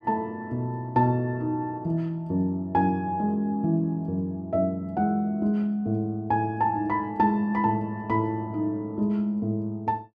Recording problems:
none

